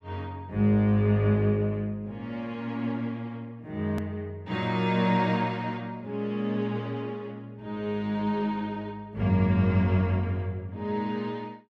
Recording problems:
click at an edit; at 4 s

